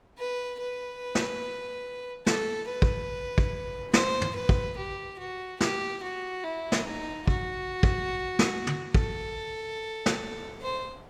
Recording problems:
wind noise; below 960 Hz, SNR 24 dB

